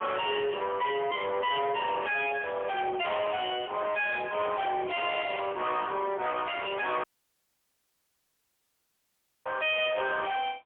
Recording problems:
phone line; 320 Hz to 3.1 kHz, AMR-NB, then MP3
distortion; soft clipping, signal-to-distortion ratio 7 dB
burst of static; at 3 s; peak -18 dB vs average level
audio cutting out; at 7 s for 2.5 s

